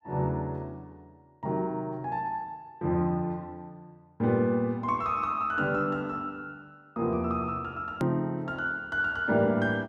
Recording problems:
hard cut with a click; at 8 s

